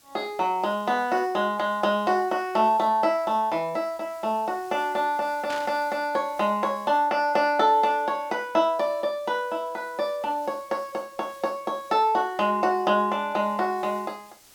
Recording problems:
hiss; slope -1 dB per octave, SNR 27 dB
burst of static; at 5.5 s; peak -8 dB vs average level

